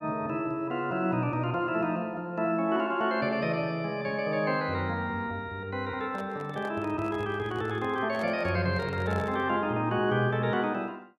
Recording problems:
microphone handling noise; from 6 to 9.5 s; peak -6 dB vs average level

